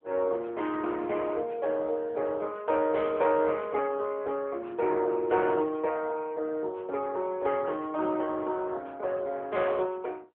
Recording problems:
phone line; 320 Hz to 3.4 kHz, AMR-NB

